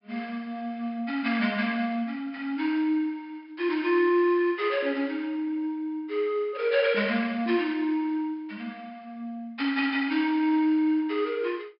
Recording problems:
low-pass filter; nothing above 5.5 kHz

